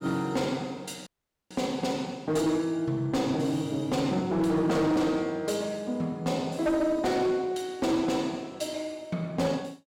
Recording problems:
distortion; hard clipping, signal-to-distortion ratio 12 dB
audio cutting out; at 1 s

